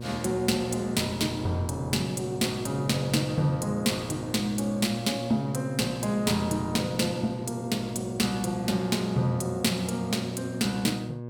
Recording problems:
hum; 60 Hz, harmonics up to 1.1 kHz, SNR 10 dB

